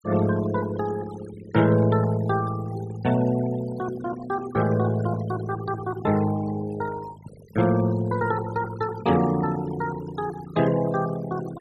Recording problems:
denoising artefacts; signal-to-artefact ratio 15 dB

